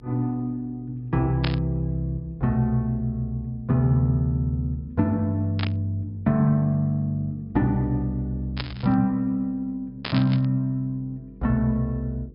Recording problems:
low-pass filter; nothing above 5.5 kHz
hum; 50 Hz, harmonics up to 500 Hz, SNR 26 dB
burst of static; 4 times, first at 1.5 s; peak -1 dB vs average level

